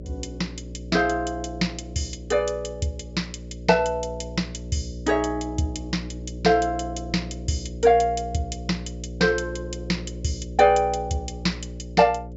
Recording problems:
low-pass filter; nothing above 8 kHz
electrical hum; 60 Hz, harmonics up to 600 Hz, SNR 12 dB

